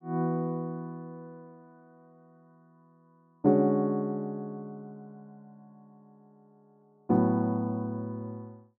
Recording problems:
none

